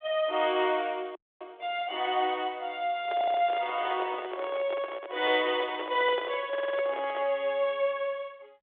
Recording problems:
telephone audio; 320 Hz to 3.6 kHz, G.726
audio freezing; at 1 s
microphone handling noise; from 3 to 7.5 s; peak -4 dB vs average level
audio stuttering; at 3 s and at 6.5 s

